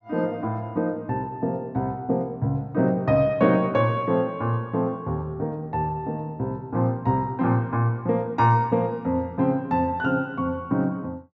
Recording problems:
treble missing; nothing above 8 kHz

